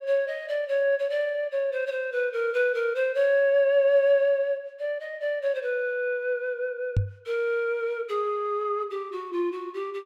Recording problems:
knock on the microphone; at 7 s; peak +5 dB vs average level

